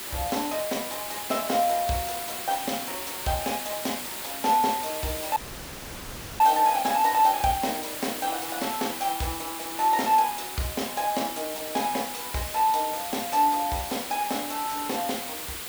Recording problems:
background hiss; slope -1 dB per octave, SNR 6 dB
audio cutting out; at 5.5 s for 1 s

